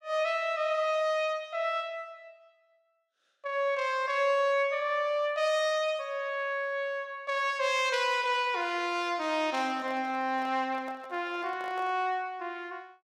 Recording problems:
microphone handling noise; from 9.5 to 12 s; peak -12 dB vs average level

